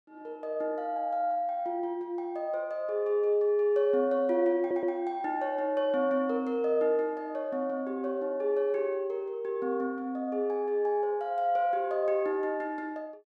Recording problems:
stutter; at 4.5 s

